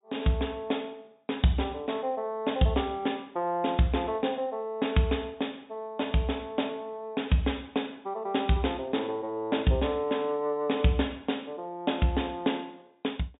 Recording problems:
treble missing; nothing above 4 kHz

